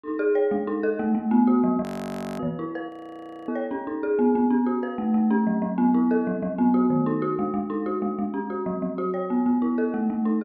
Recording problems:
audio freezing; at 2 s for 0.5 s and at 3 s for 0.5 s

